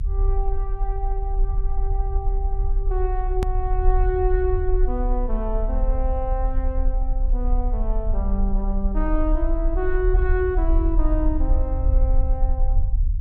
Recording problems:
rumble; below 46 Hz, strongest tone 34 Hz, SNR -4 dB
edit click; at 3.5 s

